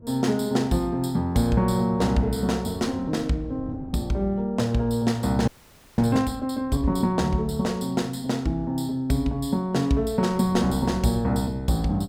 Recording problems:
wind noise; below 250 Hz, SNR 21 dB
audio freezing; at 5.5 s for 0.5 s

